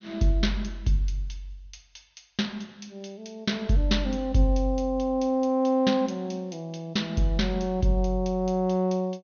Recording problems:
treble cut off; nothing above 6.4 kHz

